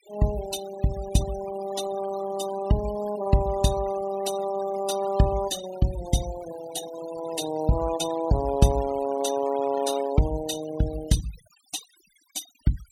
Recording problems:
denoising artefacts; signal-to-artefact ratio 14 dB

